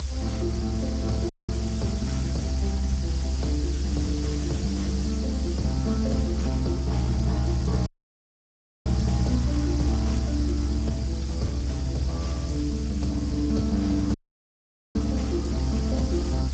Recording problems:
lossy codec; Speex, log-spectral distance 3 dB, nothing above 16.5 kHz
background hiss; slope +2 dB per octave, SNR 12 dB
low-frequency rumble; below 70 Hz, strongest tone 66 Hz, SNR 1 dB
audio cutting out; at 1.5 s, at 8 s for 1 s and at 14 s for 1 s
crackling; from 7 to 11 s; loose cable, SNR 23 dB

